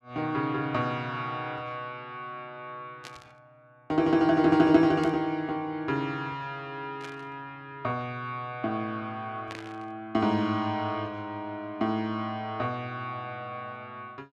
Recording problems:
burst of static; 4 times, first at 3 s; peak -7 dB vs average level

